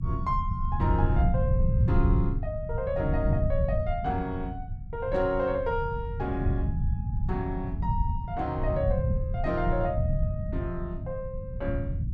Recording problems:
low-frequency rumble; below 120 Hz, SNR -1 dB

